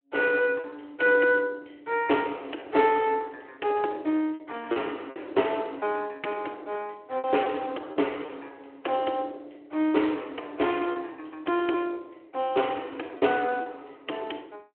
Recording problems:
phone line; 260 Hz to 3.3 kHz, Speex
lost packets; 4% of the sound replaced, filled with repeated pitch periods

